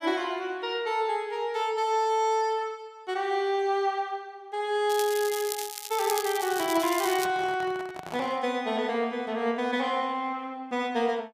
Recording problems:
crackle; from 5 to 7.5 s; loose cable, SNR 8 dB
handling noise; from 6.5 to 8.5 s; peak -6 dB vs average level

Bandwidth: 15 kHz